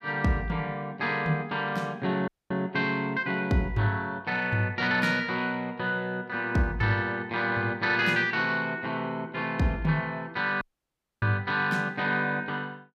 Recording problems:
audio cutting out; at 2.5 s and at 11 s for 0.5 s

